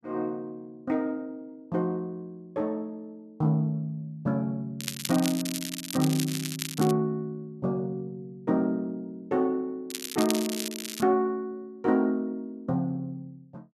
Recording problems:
crackle; from 5 to 7 s and from 10 to 11 s; loose cable, SNR 5 dB

